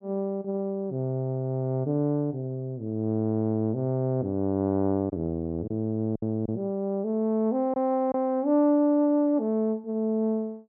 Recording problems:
lost packets; 1.5% of the sound replaced, filled with silence

